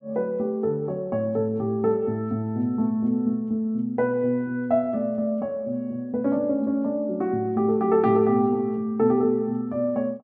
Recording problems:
none

